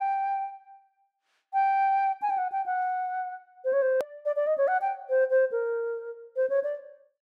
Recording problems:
click at an edit; at 4 s

